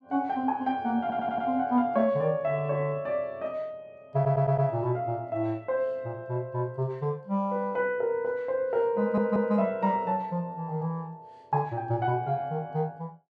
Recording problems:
audio stuttering; at 1 s, at 4 s and at 9 s

